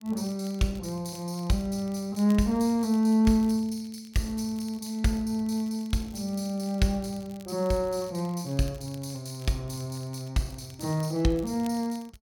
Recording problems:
crackling; vinyl, SNR 25 dB

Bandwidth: 17.5 kHz